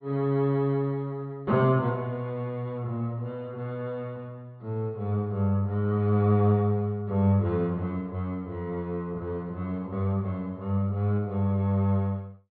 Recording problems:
treble missing; nothing above 4.5 kHz

